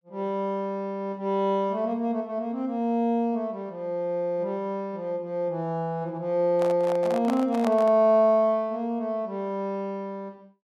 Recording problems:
handling noise; from 6.5 to 8 s; peak -2 dB vs average level

